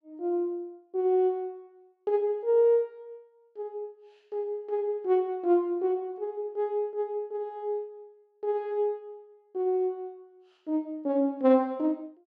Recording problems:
none

